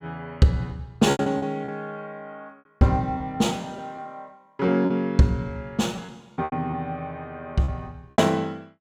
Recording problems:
lost packets; 7% of the sound replaced, filled with repeated pitch periods

